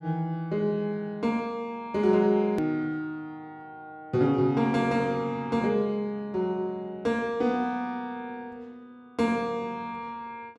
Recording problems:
hard cut with a click; at 2.5 s

